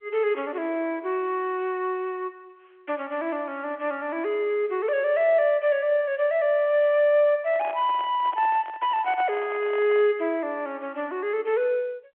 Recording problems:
telephone audio; 300 Hz to 3.5 kHz, G.711
microphone handling noise; from 7.5 to 10 s; peak -8 dB vs average level

